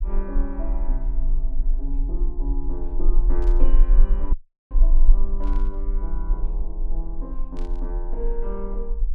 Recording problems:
low-frequency rumble; below 36 Hz, strongest tone 20 Hz, SNR -11 dB
static burst; at 3.5 s, at 5.5 s and at 7.5 s; peak -9 dB vs average level
dropout; at 4.5 s

